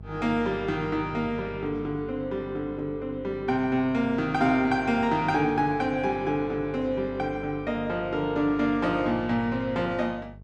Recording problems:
hum; 50 Hz, harmonics up to 650 Hz, SNR 17 dB

